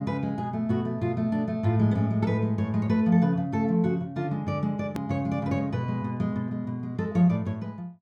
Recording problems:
hard cut with a click; at 5 s

